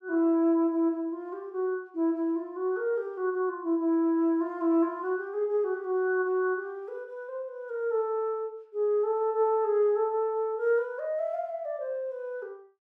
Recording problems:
none

